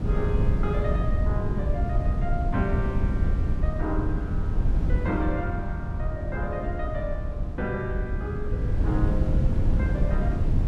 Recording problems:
wind on the microphone; below 110 Hz, SNR -6 dB

